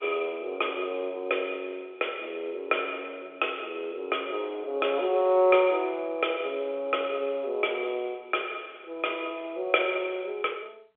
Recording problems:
telephone audio; 320 Hz to 3.5 kHz, G.711

